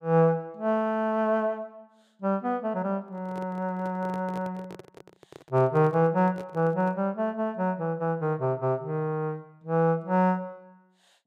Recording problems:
microphone handling noise; from 3 to 7 s; peak -9 dB vs average level

